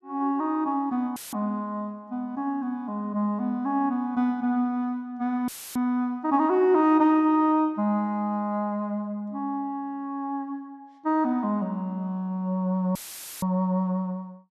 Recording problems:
dropout; at 1 s, at 5.5 s and at 13 s; filled with static

